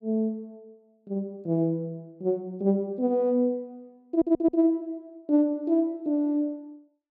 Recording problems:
stutter; at 4 s

